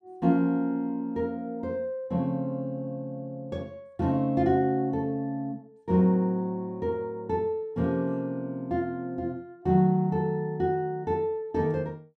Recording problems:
none

